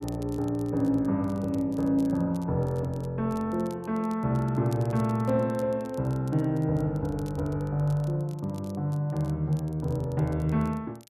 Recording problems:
crackle; vinyl, SNR 27 dB

